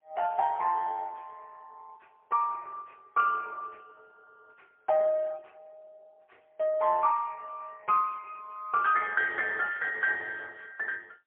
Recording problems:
phone line; 370 Hz to 3.1 kHz, AMR-NB, then MP3

